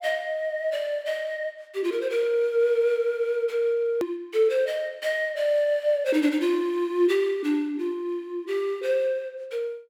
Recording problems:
edit click; at 4 s

